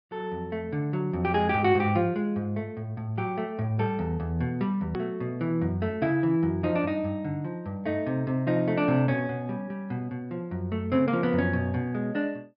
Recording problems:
treble missing; nothing above 5.5 kHz
edit click; at 5 s

